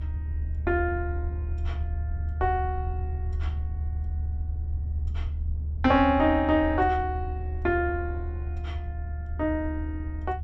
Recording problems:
rumble; below 76 Hz, strongest tone 74 Hz, SNR 5 dB

